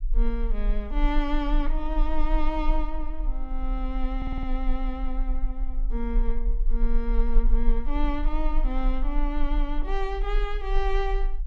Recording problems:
low-frequency rumble; below 34 Hz, strongest tone 20 Hz, SNR -3 dB
audio stuttering; at 4 s

